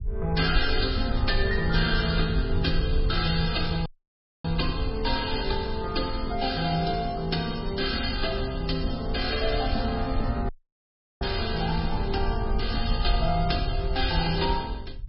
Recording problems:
lossy codec; MP3, log-spectral distance 6 dB, nothing above 4.9 kHz
low-frequency rumble; below 74 Hz, SNR 4 dB
dropout; at 4 s for 0.5 s and at 10 s for 0.5 s

